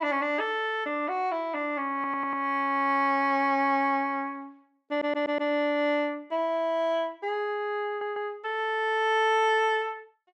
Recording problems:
audio stuttering; at 2 s, at 5 s and at 8 s

